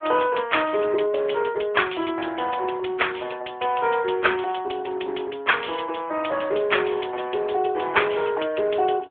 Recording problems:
telephone audio; 280 Hz to 3.4 kHz, AMR-NB

